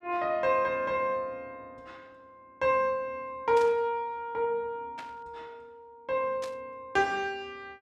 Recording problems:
burst of static; at 3.5 s, at 5 s and at 6.5 s; peak -9 dB vs average level

